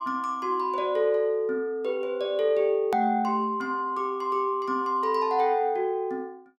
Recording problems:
edit click; at 3 s

